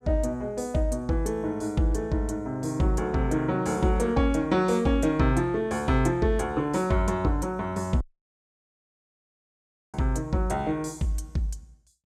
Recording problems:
audio cutting out; at 8 s for 2 s

